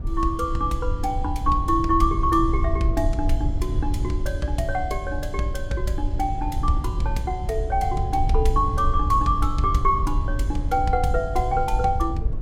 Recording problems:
low-frequency rumble; below 76 Hz, SNR 3 dB

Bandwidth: 17 kHz